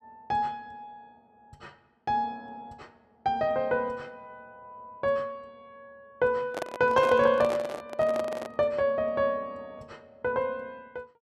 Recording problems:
handling noise; from 6.5 to 8.5 s; peak -2 dB vs average level

